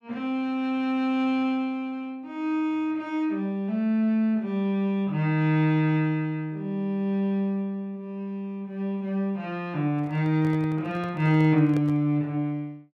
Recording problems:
handling noise; from 10 to 12 s; peak -7 dB vs average level

